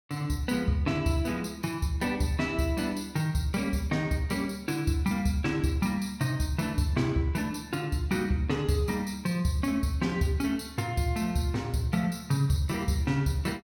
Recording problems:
none

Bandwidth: 17 kHz